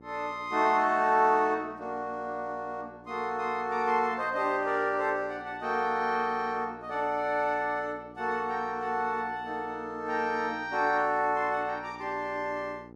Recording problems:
electrical hum; 60 Hz, harmonics up to 960 Hz, SNR 22 dB

